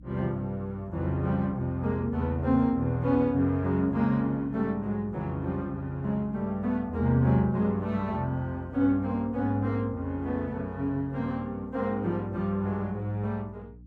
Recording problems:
hum; 60 Hz, harmonics up to 300 Hz, SNR 20 dB

